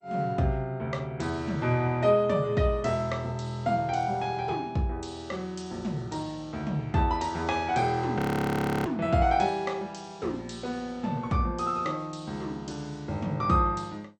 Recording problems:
lossy codec; MP2, log-spectral distance 2 dB, nothing above 18.9 kHz
frozen audio; at 8 s for 0.5 s

